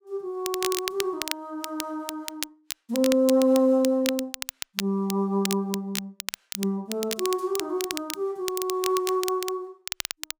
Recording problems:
crackle; vinyl, SNR 7 dB

